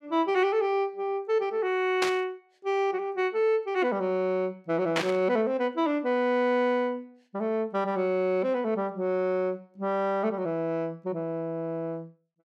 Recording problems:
burst of static; at 2 s and at 5 s; peak +3 dB vs average level

